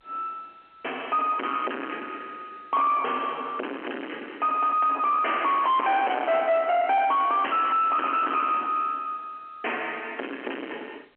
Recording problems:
telephone audio; 240 Hz to 3.3 kHz, G.711
distorted audio; soft clipping, signal-to-distortion ratio 5 dB

